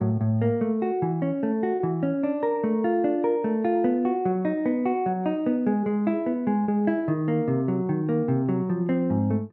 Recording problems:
lost packets; 0.8% of the sound replaced, filled with repeated pitch periods

